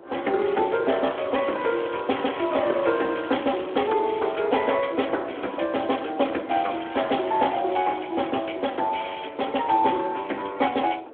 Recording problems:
phone line; 280 Hz to 3.5 kHz, Speex
wind on the microphone; below 700 Hz, SNR 22 dB
crackle; from 1 to 4.5 s and from 7 to 8 s; loose cable, SNR 19 dB

